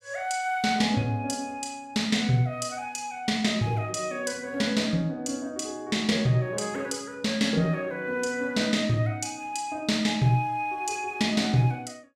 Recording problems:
none

